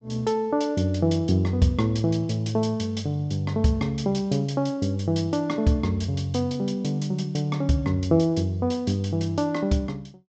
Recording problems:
treble missing; nothing above 8 kHz

